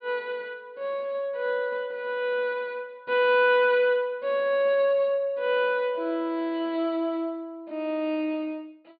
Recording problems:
low-pass filter; nothing above 4.8 kHz

